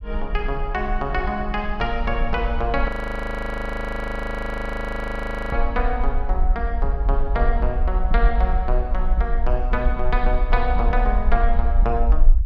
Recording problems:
low-frequency rumble; below 50 Hz, SNR -1 dB
frozen audio; at 3 s for 2.5 s

